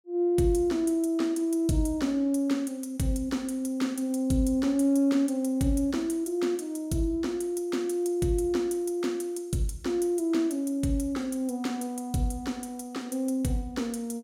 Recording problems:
none

